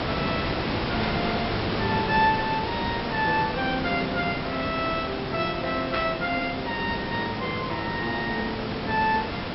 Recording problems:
low-pass filter; nothing above 5.5 kHz
hiss; slope -5 dB per octave, SNR 2 dB
static burst; at 1 s and at 6 s; peak 0 dB vs average level

